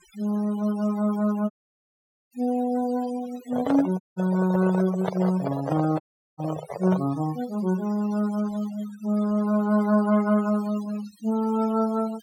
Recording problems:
noise reduction artefacts; signal-to-artefact ratio 18 dB
audio cutting out; at 1.5 s for 1 s, at 4 s and at 6 s
microphone handling noise; from 3.5 to 7 s; peak 0 dB vs average level

